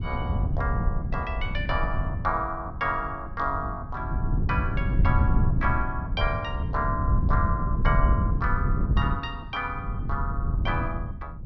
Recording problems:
low-pass filter; nothing above 6.4 kHz
wind noise; below 120 Hz, SNR -3 dB

